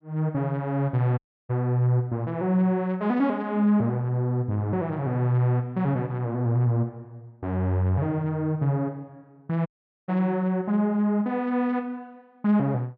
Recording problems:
audio cutting out; at 1 s and at 9.5 s

